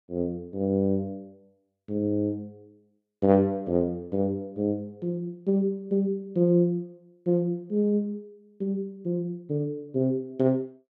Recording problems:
none

